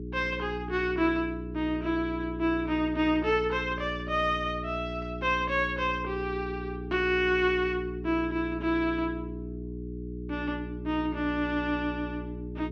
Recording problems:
hum; 60 Hz, harmonics up to 420 Hz, SNR 8 dB

